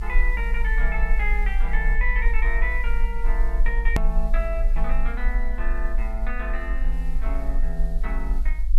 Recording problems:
hiss; SNR 26 dB
rumble; below 46 Hz, strongest tone 24 Hz, SNR -4 dB
edit click; at 4 s

